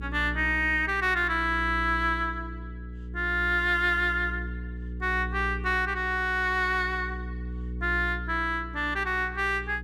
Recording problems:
electrical hum; 60 Hz, harmonics up to 480 Hz, SNR 10 dB

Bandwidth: 15 kHz